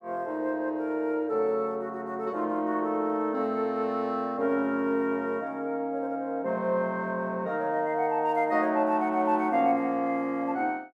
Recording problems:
none

